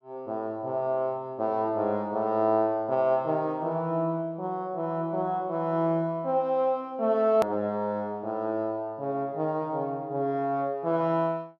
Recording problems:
click at an edit; at 7.5 s

